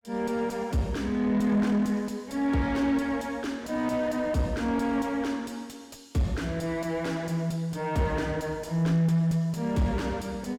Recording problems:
distortion; soft clipping, signal-to-distortion ratio 10 dB

